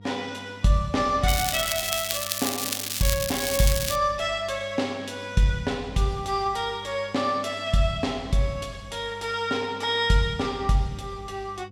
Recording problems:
hum; 50 Hz, harmonics up to 700 Hz, SNR 20 dB
crackle; from 1.5 to 4 s; loose cable, SNR 1 dB

